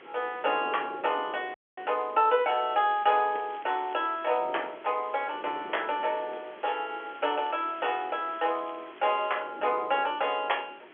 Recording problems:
phone line; 300 Hz to 3.4 kHz, G.711
hiss; SNR 23 dB
wind on the microphone; below 560 Hz, SNR 19 dB
audio cutting out; at 1.5 s
crackle; from 3 to 4.5 s and from 7 to 9.5 s; loose cable, SNR 27 dB

